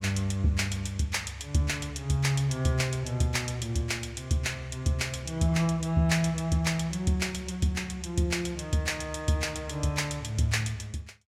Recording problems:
none

